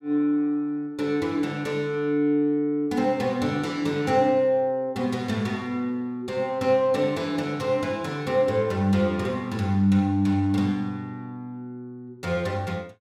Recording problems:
none

